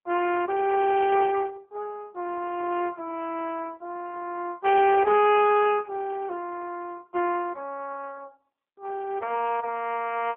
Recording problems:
telephone audio; 300 Hz to 3.3 kHz, AMR-NB

